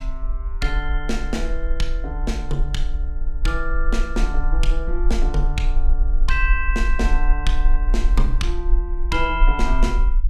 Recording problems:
rumble; below 42 Hz, strongest tone 22 Hz, SNR -3 dB

